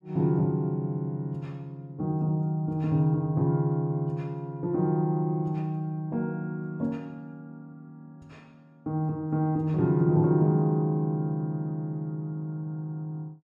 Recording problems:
none

